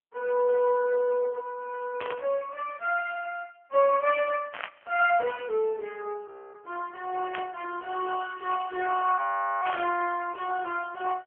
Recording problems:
phone line; 370 Hz to 2.8 kHz, AMR-NB
burst of static; 4 times, first at 2 s; peak -2 dB vs average level
frozen audio; at 6.5 s and at 9 s

